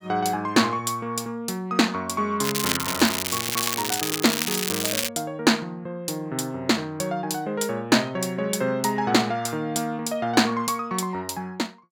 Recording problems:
crackle; from 2.5 to 5 s; loose cable, SNR 1 dB

